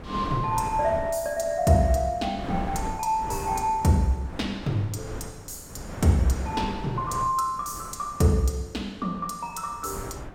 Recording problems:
wind on the microphone; below 560 Hz, SNR 12 dB

